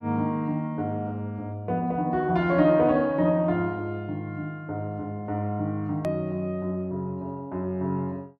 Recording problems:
edit click; at 6 s

